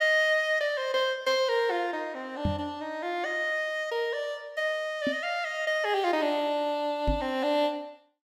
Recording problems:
microphone thump; at 2.5 s, at 5 s and at 7 s; peak +3 dB vs average level

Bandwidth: 16 kHz